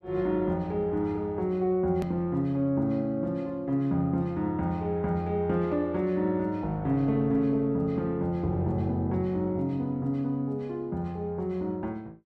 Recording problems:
edit click; at 2 s

